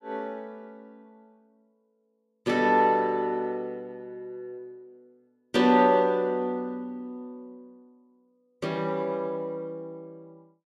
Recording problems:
none

